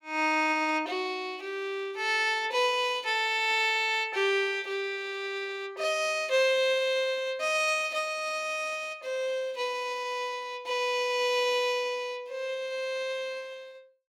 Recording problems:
none

